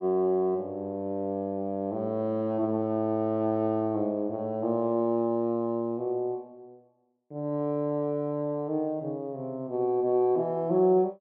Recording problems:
none

